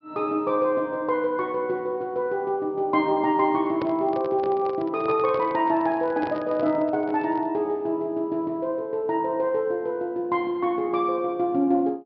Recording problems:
low-pass filter; nothing above 5.5 kHz
microphone handling noise; from 3.5 to 7.5 s; peak -4 dB vs average level

